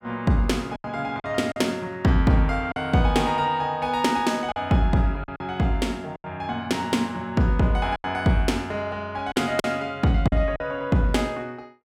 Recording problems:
lost packets; 6% of the sound replaced, filled with silence

